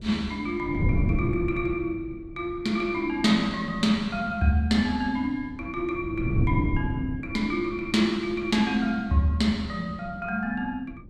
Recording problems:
wind noise; below 190 Hz, SNR 5 dB

